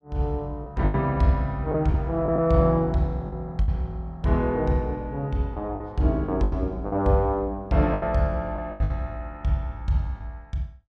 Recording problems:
lost packets; 7% of the sound replaced, filled with the last packet

